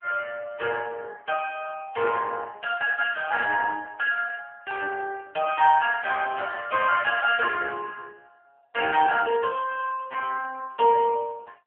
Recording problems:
phone line; 320 Hz to 2.9 kHz, AMR-NB

